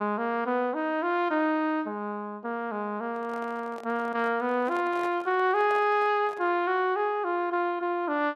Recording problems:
handling noise; from 3 to 6.5 s; peak -10 dB vs average level

